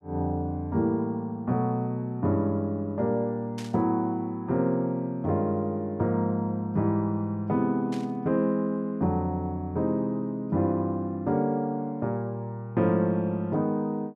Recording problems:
static burst; at 3.5 s and at 8 s; peak -10 dB vs average level

